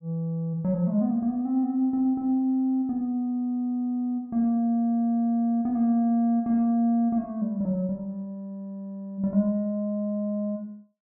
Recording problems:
none

